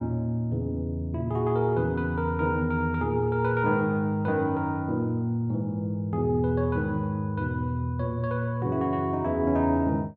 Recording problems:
none

